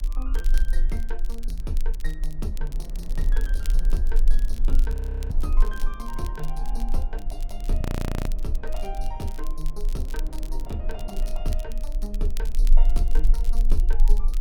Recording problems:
low-frequency rumble; below 32 Hz, strongest tone 20 Hz, SNR -9 dB
wind on the microphone; below 400 Hz, SNR 11 dB
crackling; vinyl, SNR 11 dB
audio freezing; at 5 s and at 8 s

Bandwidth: 17 kHz